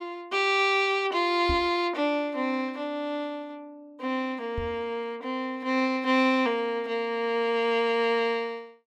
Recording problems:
microphone bump; at 1.5 s and at 4.5 s; peak -2 dB vs average level

